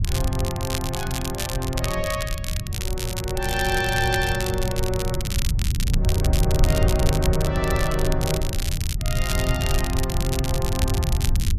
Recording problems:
low-frequency rumble; below 100 Hz, SNR -1 dB
crackling; vinyl, SNR 5 dB

